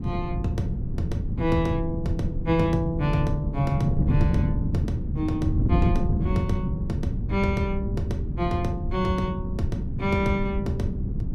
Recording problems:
wind noise; below 170 Hz, SNR 0 dB

